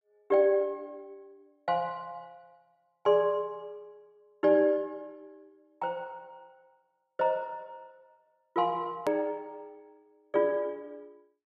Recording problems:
hard cut with a click; at 9 s

